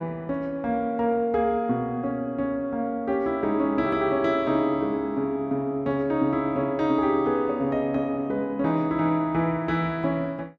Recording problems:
none

